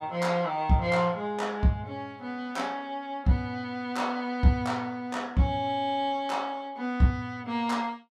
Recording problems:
none

